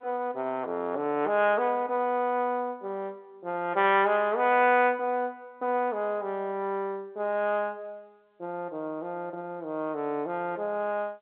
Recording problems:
telephone audio; 260 Hz to 3.9 kHz, G.711

